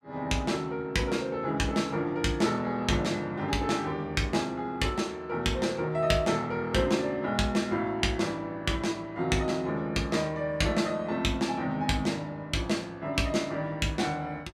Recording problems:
none

